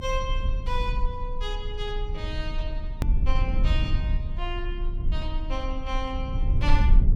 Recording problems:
rumble; below 60 Hz, SNR -6 dB
edit click; at 3 s

